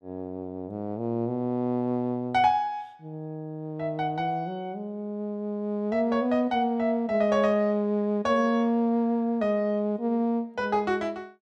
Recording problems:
none

